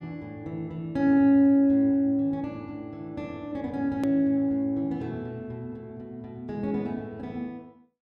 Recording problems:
hard cut with a click; at 4 s

